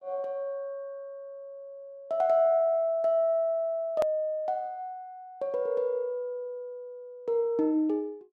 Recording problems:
click at an edit; at 4 s

